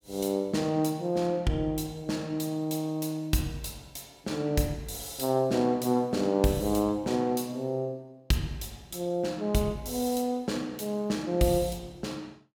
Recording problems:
none

